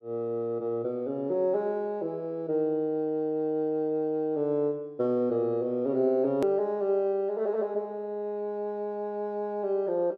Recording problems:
hard cut with a click; at 6.5 s

